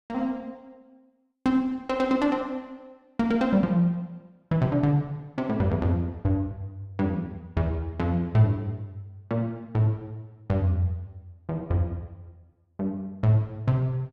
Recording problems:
none

